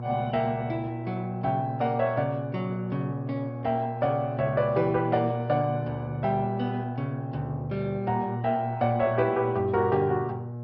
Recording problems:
lossy codec; MP2, log-spectral distance 2 dB, nothing above 5.3 kHz
mains hum; 60 Hz, harmonics up to 1.1 kHz, SNR 8 dB

